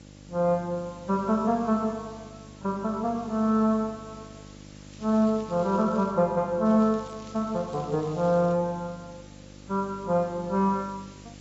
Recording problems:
codec artefacts; AAC, log-spectral distance 8 dB
mains hum; 50 Hz, harmonics up to 1.1 kHz, SNR 22 dB
hiss; slope 0 dB per octave, SNR 27 dB
crackle; from 5 to 6 s and from 6.5 to 8.5 s; loose cable, SNR 26 dB

